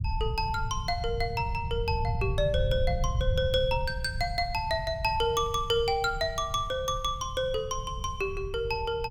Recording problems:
rumble; below 110 Hz, SNR 6 dB

